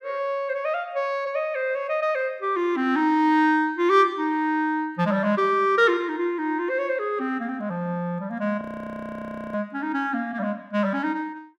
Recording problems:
audio freezing; at 8.5 s for 1 s

